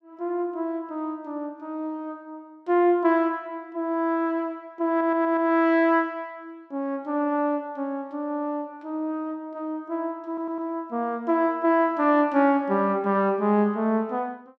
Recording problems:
stutter; at 5 s and at 10 s

